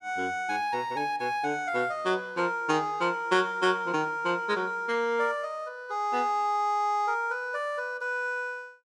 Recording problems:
none

